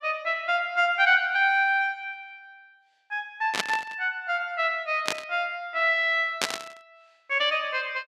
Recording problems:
static burst; at 3.5 s, at 5 s and at 6.5 s; peak +4 dB vs average level

